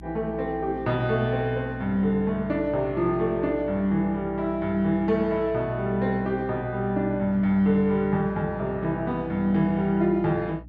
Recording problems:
hum; 60 Hz, harmonics up to 300 Hz, SNR 19 dB

